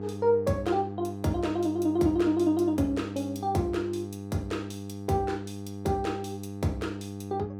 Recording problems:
mains hum; 50 Hz, harmonics up to 1.2 kHz, SNR 9 dB

